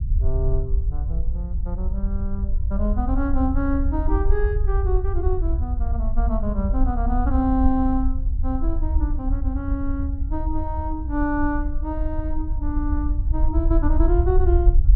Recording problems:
rumble; below 64 Hz, SNR -2 dB

